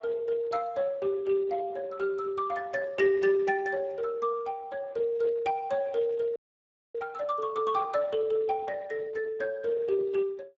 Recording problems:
codec artefacts; Speex, log-spectral distance 3 dB, nothing above 7.3 kHz
audio freezing; at 6.5 s for 0.5 s

